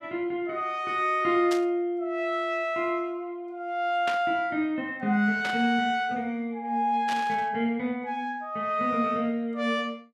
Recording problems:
static burst; 4 times, first at 1.5 s; peak -3 dB vs average level

